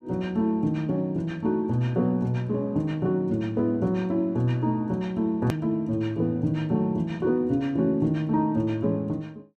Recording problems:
edit click; at 5.5 s

